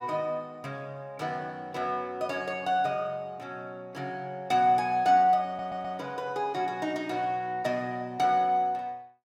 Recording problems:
audio stuttering; at 5.5 s

